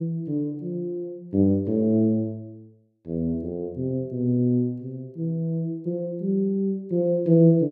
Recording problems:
none

